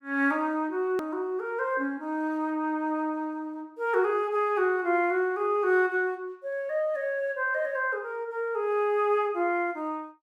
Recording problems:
edit click; at 1 s

